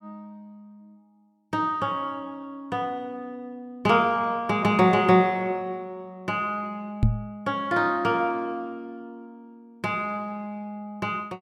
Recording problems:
microphone bump; at 7 s; peak +8 dB vs average level

